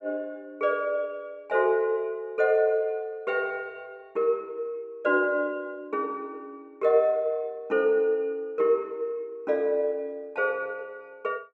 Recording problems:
none

